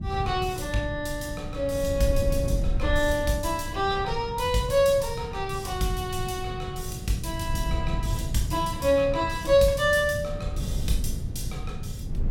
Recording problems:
rumble; below 140 Hz, SNR 9 dB
wind noise; below 92 Hz, SNR 8 dB

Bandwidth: 16.5 kHz